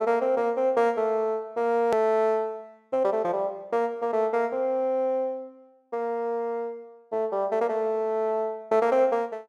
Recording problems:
edit click; at 2 s

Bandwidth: 12.5 kHz